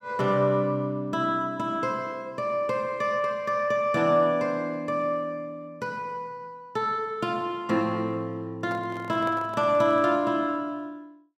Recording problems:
handling noise; from 8.5 to 10 s; peak -8 dB vs average level

